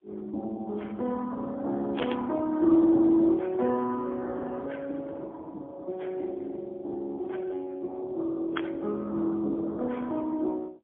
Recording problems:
phone line; 240 Hz to 2.1 kHz, AMR-NB, then MP3
burst of static; at 2 s and at 8.5 s; peak -3 dB vs average level

